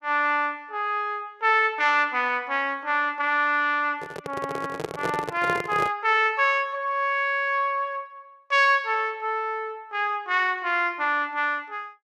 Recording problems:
microphone handling noise; from 4 to 6 s; peak -2 dB vs average level

